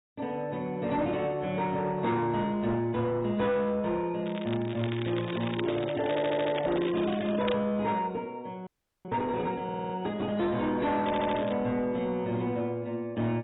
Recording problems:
codec artefacts; AAC, log-spectral distance 4 dB, nothing above 3.8 kHz
distortion; soft clipping, signal-to-distortion ratio 11 dB
crackling; from 4.5 to 7.5 s and at 11 s; loose cable, SNR 12 dB
stutter; at 6 s, at 9.5 s and at 11 s
audio freezing; at 8.5 s

